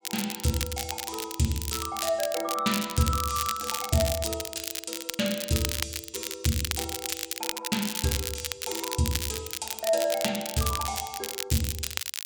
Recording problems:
crackle; vinyl, SNR 2 dB

